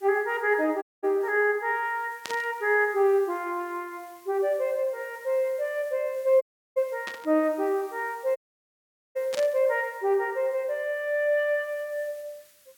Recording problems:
hiss; SNR 27 dB
dropout; at 1 s, at 6.5 s and at 8.5 s for 1 s
static burst; at 2 s, at 7 s and at 9.5 s; peak -4 dB vs average level

